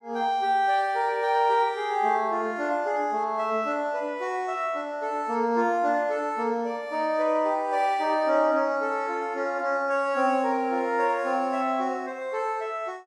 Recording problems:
none

